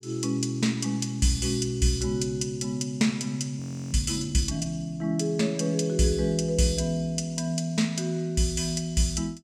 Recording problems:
frozen audio; at 3.5 s

